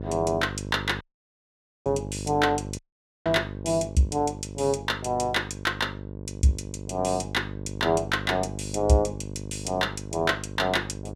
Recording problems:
hum; 50 Hz, harmonics up to 650 Hz, SNR 10 dB
dropout; at 1 s for 1 s and at 3 s

